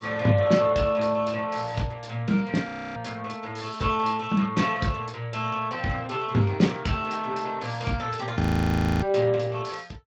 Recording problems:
codec artefacts; Speex, log-spectral distance 4 dB
frozen audio; at 2.5 s and at 8.5 s for 0.5 s

